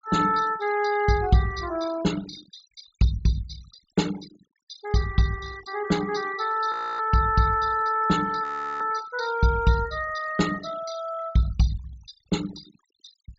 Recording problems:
treble cut off; nothing above 8 kHz
denoising artefacts; signal-to-artefact ratio 17 dB
frozen audio; at 6.5 s and at 8.5 s

